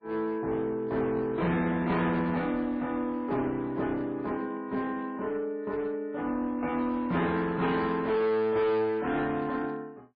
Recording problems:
lossy compression; MP3, log-spectral distance 2 dB, nothing above 10.7 kHz
distorted audio; hard clipping, uneven, signal-to-distortion ratio 9 dB

